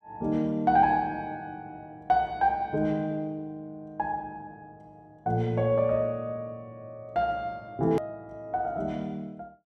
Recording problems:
hard cut with a click; at 8 s

